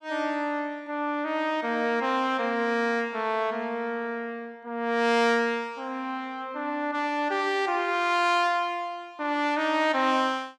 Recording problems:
none

